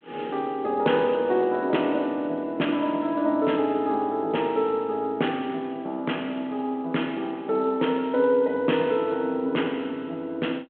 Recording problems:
telephone audio; 220 Hz to 3.3 kHz, G.726

